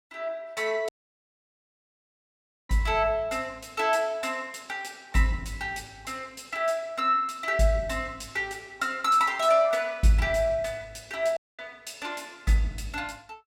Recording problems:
audio cutting out; at 1 s for 2 s and at 11 s

